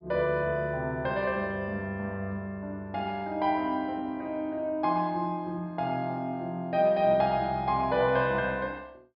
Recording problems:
treble missing; nothing above 5.5 kHz

